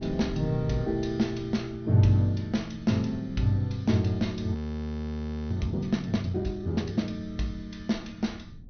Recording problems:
low-pass filter; nothing above 6.1 kHz
wind noise; below 150 Hz, SNR 17 dB
frozen audio; at 4.5 s for 1 s

